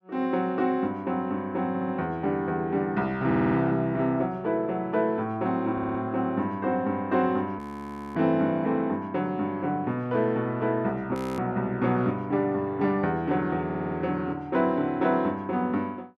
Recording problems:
audio stuttering; 4 times, first at 1.5 s
audio freezing; at 7.5 s for 0.5 s and at 11 s

